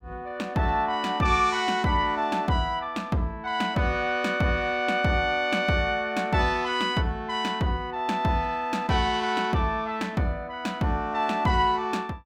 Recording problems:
none

